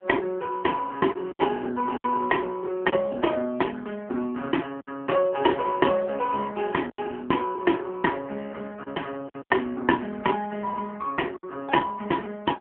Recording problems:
phone line; 190 Hz to 3 kHz, AMR-NB
lost packets; 4% of the sound replaced, filled with silence

